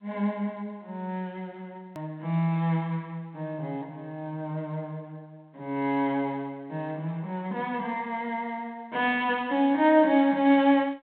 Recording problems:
telephone audio; 240 Hz to 3.9 kHz, G.726
click at an edit; at 2 s

